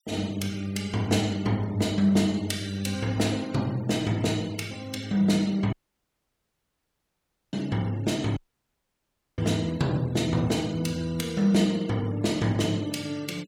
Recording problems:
denoising artefacts; signal-to-artefact ratio 22 dB
audio cutting out; at 5.5 s for 2 s and at 8.5 s for 1 s

